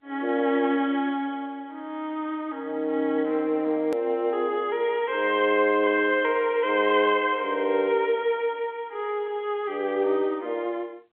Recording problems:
telephone audio; 280 Hz to 3.6 kHz, G.711
edit click; at 4 s

